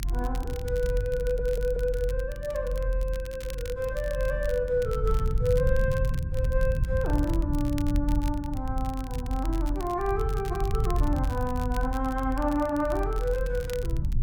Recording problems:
hum; 50 Hz, harmonics up to 350 Hz, SNR 20 dB
low-frequency rumble; below 84 Hz, strongest tone 42 Hz, SNR 1 dB
crackling; vinyl, SNR 18 dB
audio stuttering; at 1 s

